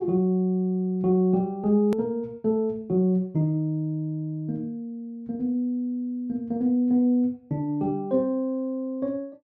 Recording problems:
click at an edit; at 2 s

